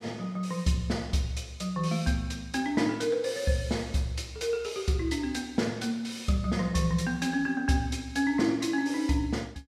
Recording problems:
none

